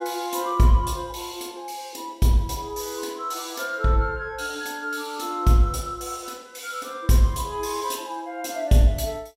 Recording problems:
none

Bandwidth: 16 kHz